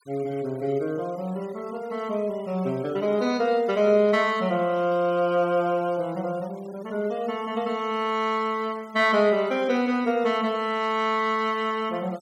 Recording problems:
noise reduction artefacts; signal-to-artefact ratio 25 dB

